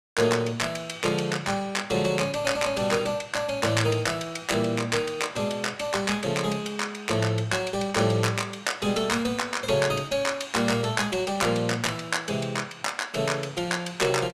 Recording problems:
none

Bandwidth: 14.5 kHz